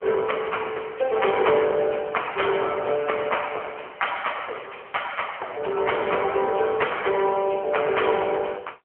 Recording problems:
telephone audio; 340 Hz to 3.2 kHz, AMR-NB

